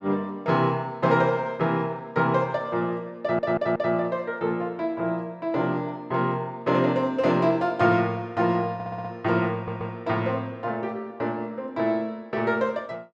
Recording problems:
stutter; at 3 s, at 8.5 s and at 9.5 s

